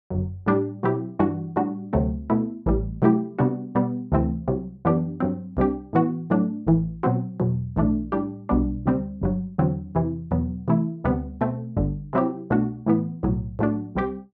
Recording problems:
none

